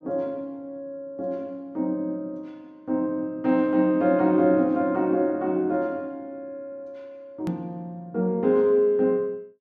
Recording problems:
click at an edit; at 7.5 s

